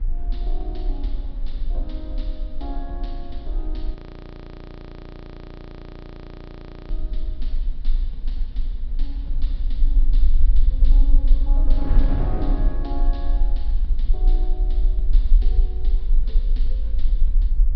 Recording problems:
treble cut off; nothing above 5.5 kHz
rumble; below 38 Hz, strongest tone 18 Hz, SNR -15 dB
wind noise; below 140 Hz, SNR -1 dB
frozen audio; at 4 s for 3 s

